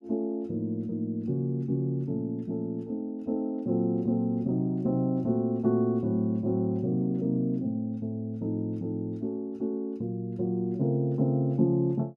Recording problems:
none

